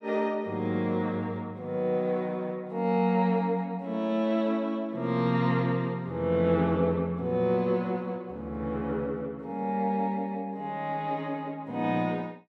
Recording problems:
none

